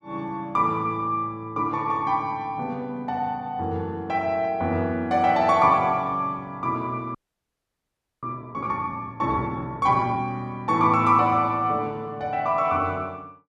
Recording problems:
frozen audio; at 7 s for 1 s

